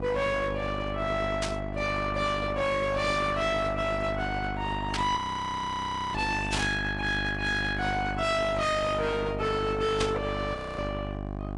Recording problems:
lossy codec; AAC, log-spectral distance 3 dB, nothing above 10.7 kHz
distortion; hard clipping, signal-to-distortion ratio 8 dB
electrical hum; 50 Hz, harmonics up to 1.2 kHz, SNR 6 dB
static burst; 4 times, first at 1.5 s; peak +2 dB vs average level
audio freezing; at 5 s for 1 s and at 11 s

